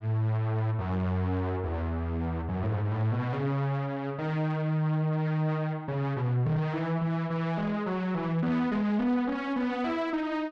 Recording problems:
distortion; soft clipping, signal-to-distortion ratio 10 dB

